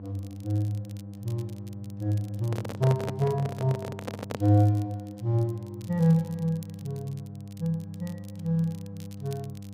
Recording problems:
hum; 50 Hz, harmonics up to 800 Hz, SNR 12 dB
crackling; vinyl, SNR 26 dB
microphone handling noise; from 2.5 to 4.5 s; peak -1 dB vs average level

